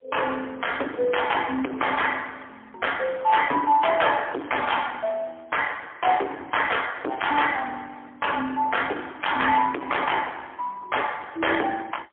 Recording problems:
phone line; 260 Hz to 3.3 kHz, AMR-NB, then MP3
distorted audio; hard clipping, signal-to-distortion ratio 6 dB

